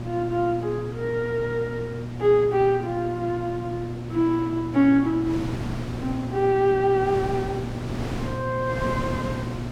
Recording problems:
electrical hum; 60 Hz, harmonics up to 720 Hz, SNR 10 dB
wind on the microphone; below 540 Hz, SNR 11 dB

